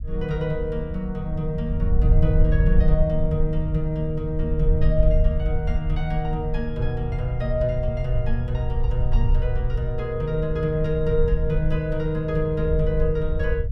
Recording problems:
rumble; below 66 Hz, SNR 1 dB

